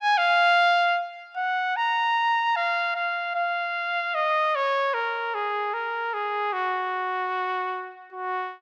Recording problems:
none

